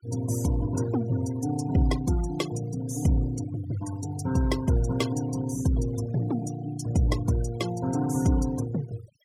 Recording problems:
noise reduction artefacts; signal-to-artefact ratio 16 dB

